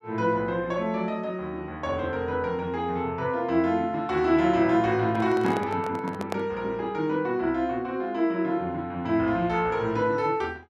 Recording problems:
handling noise; from 5 to 6.5 s; peak -1 dB vs average level

